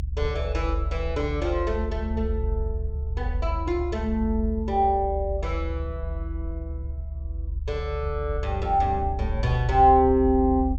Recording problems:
treble cut off; nothing above 8 kHz
low-frequency rumble; below 72 Hz, strongest tone 70 Hz, SNR 5 dB

